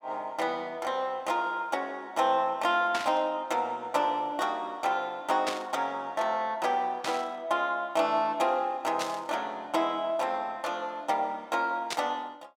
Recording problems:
static burst; 5 times, first at 3 s; peak +1 dB vs average level

